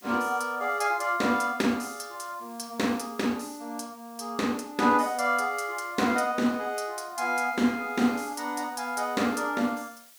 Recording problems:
background hiss; slope +3 dB per octave, SNR 24 dB

